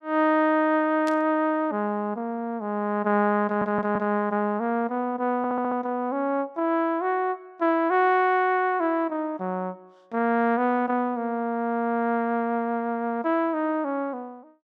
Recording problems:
static burst; at 1 s; peak -10 dB vs average level
stutter; at 3.5 s and at 5.5 s

